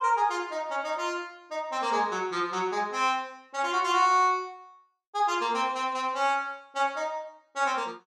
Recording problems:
none

